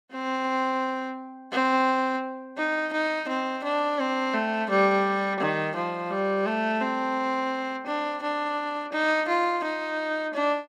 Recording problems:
none

